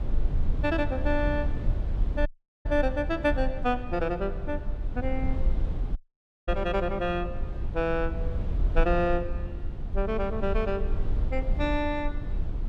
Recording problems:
low-frequency rumble; below 60 Hz, SNR 3 dB
audio cutting out; at 2.5 s and at 6 s for 0.5 s

